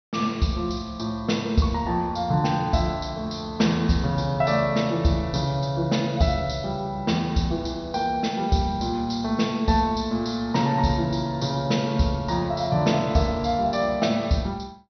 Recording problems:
treble missing; nothing above 6 kHz

